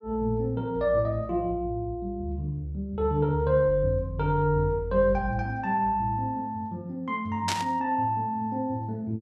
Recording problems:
burst of static; at 7.5 s; peak +2 dB vs average level

